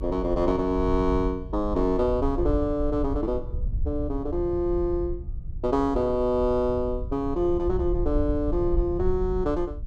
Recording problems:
low-frequency rumble; below 72 Hz, SNR 7 dB

